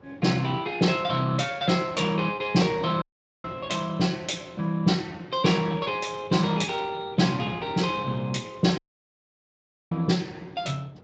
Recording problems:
lossy compression; Speex, log-spectral distance 4 dB, nothing above 7.3 kHz
wind noise; below 570 Hz, SNR 22 dB
dropout; at 3 s and at 9 s for 1 s

